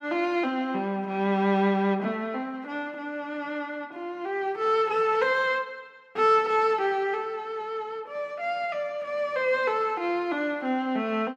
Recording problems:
none

